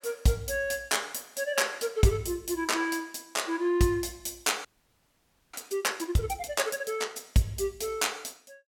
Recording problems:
audio freezing; at 4.5 s for 1 s

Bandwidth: 17 kHz